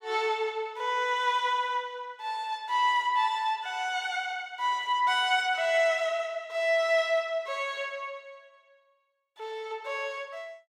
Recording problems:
none

